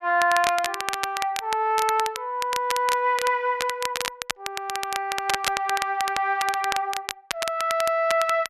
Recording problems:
crackle; vinyl, SNR 6 dB

